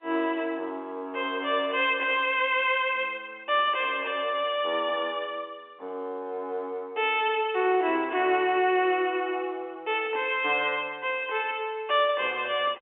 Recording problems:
telephone audio; 280 Hz to 3.6 kHz, G.711

